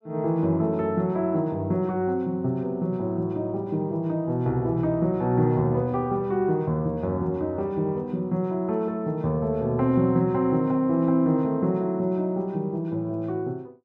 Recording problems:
none

